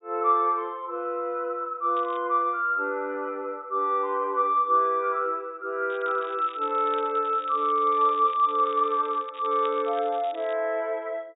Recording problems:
treble cut off; nothing above 4 kHz
crackling; at 2 s and from 6 to 11 s; loose cable, SNR 23 dB

